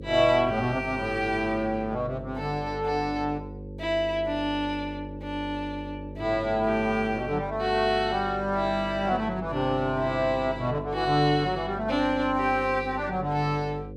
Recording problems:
mains hum; 50 Hz, harmonics up to 550 Hz, SNR 13 dB

